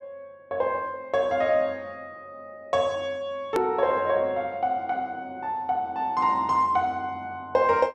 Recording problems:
click at an edit; at 3.5 s

